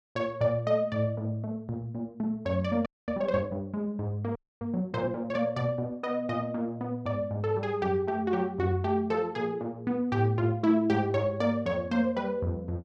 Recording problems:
audio freezing; at 3 s and at 4.5 s

